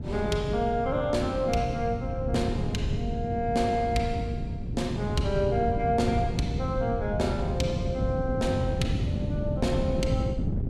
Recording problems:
wind on the microphone; below 190 Hz, SNR 2 dB

